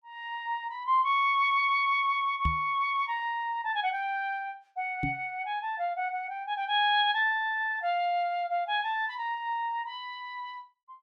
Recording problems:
microphone thump; at 2.5 s and at 5 s; peak +2 dB vs average level

